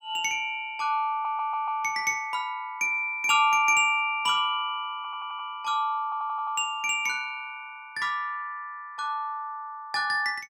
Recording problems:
audio stuttering; at 1 s, at 5 s and at 6 s

